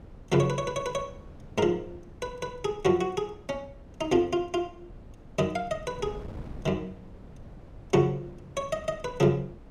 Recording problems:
wind noise; below 270 Hz, SNR 18 dB

